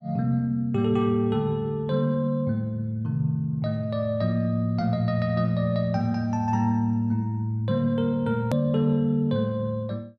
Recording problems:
edit click; at 8.5 s

